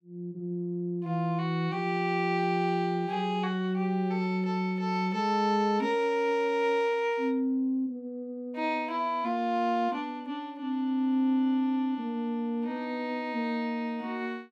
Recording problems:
none

